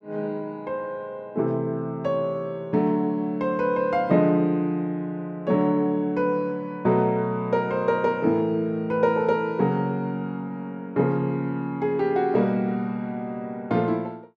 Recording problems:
none

